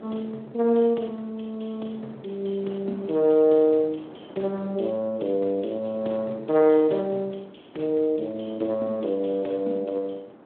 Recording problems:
telephone audio; 260 Hz to 3.6 kHz, Speex
wind on the microphone; below 660 Hz, SNR 21 dB

